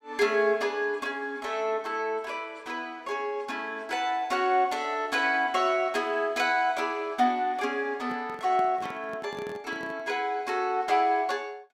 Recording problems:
microphone handling noise; from 8 to 10 s; peak -10 dB vs average level

